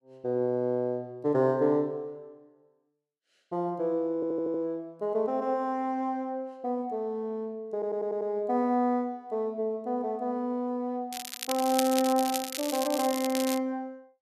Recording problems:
audio stuttering; at 4 s and at 7.5 s
crackle; from 11 to 14 s; loose cable, SNR 6 dB

